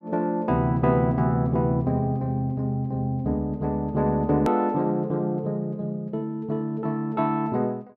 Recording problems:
hard cut with a click; at 4.5 s

